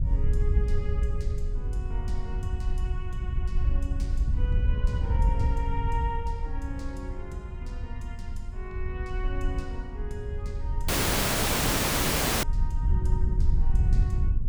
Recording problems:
wind noise; below 74 Hz, SNR -10 dB
audio cutting out; at 11 s for 1.5 s

